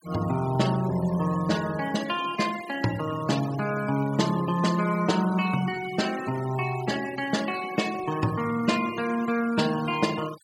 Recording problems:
denoising artefacts; signal-to-artefact ratio 14 dB

